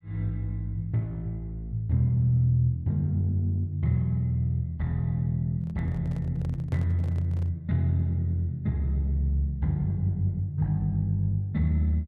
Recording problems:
microphone handling noise; from 5.5 to 7.5 s; peak -12 dB vs average level

